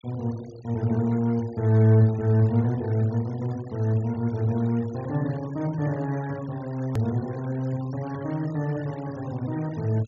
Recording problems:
treble missing; nothing above 7.1 kHz
noise reduction artefacts; signal-to-artefact ratio 23 dB
hard cut with a click; at 7 s

